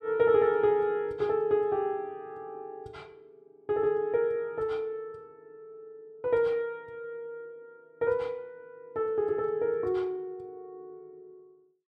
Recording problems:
none

